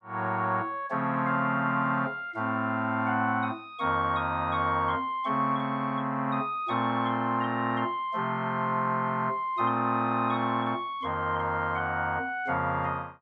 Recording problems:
none

